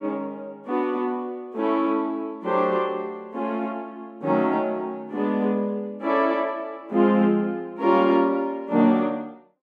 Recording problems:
none

